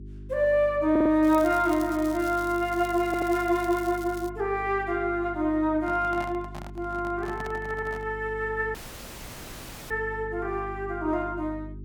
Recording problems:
hum; 50 Hz, harmonics up to 400 Hz, SNR 16 dB
audio stuttering; at 1 s, at 3 s and at 7.5 s
crackling; from 1 to 4.5 s; loose cable, SNR 19 dB
microphone handling noise; from 6 to 8 s; peak -9 dB vs average level
audio cutting out; at 9 s for 1 s

